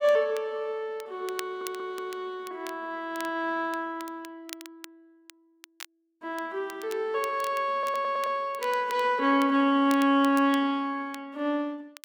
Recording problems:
crackling; vinyl, SNR 19 dB
stutter; at 1.5 s and at 7.5 s

